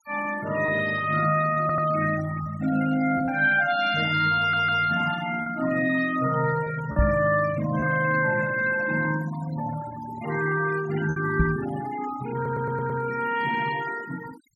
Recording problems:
noise reduction artefacts; signal-to-artefact ratio 13 dB
lost packets; 2% of the sound replaced, filled with repeated pitch periods
stutter; at 1.5 s, at 4.5 s and at 12 s
knock on the microphone; at 7 s and at 11 s; peak +6 dB vs average level

